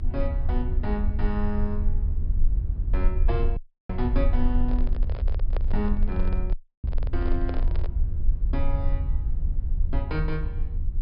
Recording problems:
low-pass filter; nothing above 5.5 kHz
electrical hum; 50 Hz, harmonics up to 350 Hz, SNR 15 dB
rumble; below 54 Hz, strongest tone 22 Hz, SNR -5 dB
dropout; at 3.5 s and at 6.5 s
microphone handling noise; from 4.5 to 8 s; peak +1 dB vs average level

